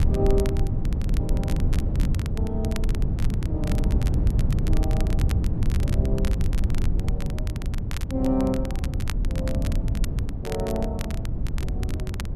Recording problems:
low-frequency rumble; below 86 Hz, SNR 9 dB
wind noise; below 120 Hz, SNR -5 dB
crackle; vinyl, SNR 10 dB

